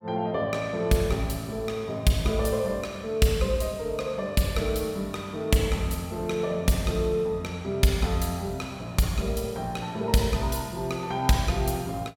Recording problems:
none

